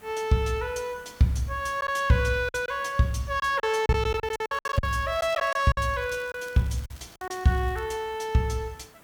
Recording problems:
background hiss; SNR 25 dB
packet loss; 8% of the sound replaced, filled with silence
crackling; from 4.5 to 8 s; loose cable, SNR 26 dB

